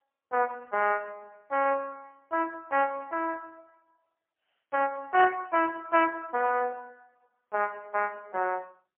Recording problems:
phone line; 340 Hz to 3.3 kHz, AMR-NB, then MP3

